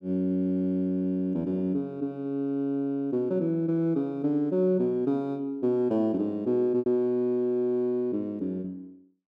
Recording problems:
packet loss; 1.8% of the sound replaced, filled with repeated pitch periods

